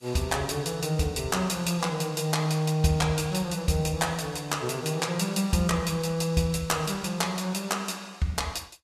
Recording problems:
codec artefacts; Vorbis, log-spectral distance 4 dB, nothing above 13.1 kHz

